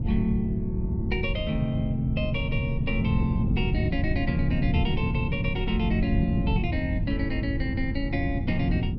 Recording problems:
wind noise; below 150 Hz, SNR 0 dB

